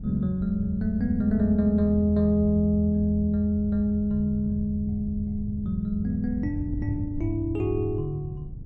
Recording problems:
wind noise; below 130 Hz, SNR 12 dB

